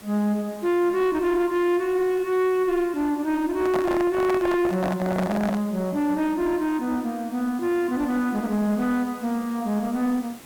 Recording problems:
distortion; soft clipping, signal-to-distortion ratio 11 dB
hiss; slope -3 dB per octave, SNR 22 dB
handling noise; from 3.5 to 5.5 s; peak 0 dB vs average level

